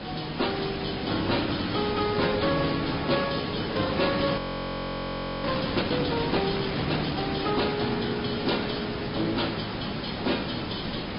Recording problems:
treble missing; nothing above 5 kHz
lossy compression; AAC, then MP3, log-spectral distance 14 dB
distortion; hard clipping, uneven, signal-to-distortion ratio 11 dB
hiss; slope -5 dB per octave, SNR 2 dB
audio freezing; at 4.5 s for 1 s

